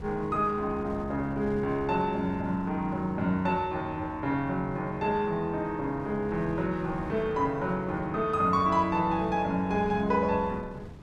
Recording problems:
wind noise; below 250 Hz, SNR 17 dB

